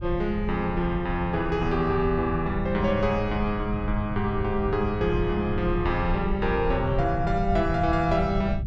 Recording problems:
rumble; below 120 Hz, SNR 7 dB

